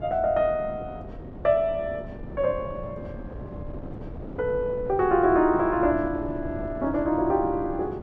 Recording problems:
wind noise; below 370 Hz, SNR 13 dB

